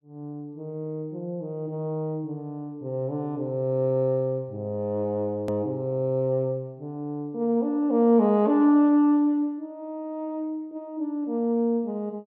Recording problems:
hard cut with a click; at 5.5 s

